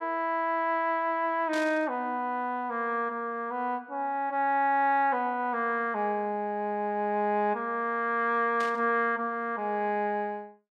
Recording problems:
static burst; at 1.5 s and at 8.5 s; peak -8 dB vs average level

